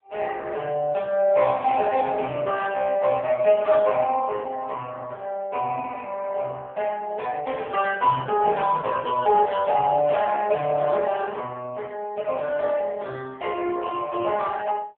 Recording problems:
phone line; 150 Hz to 3.4 kHz, AMR-NB

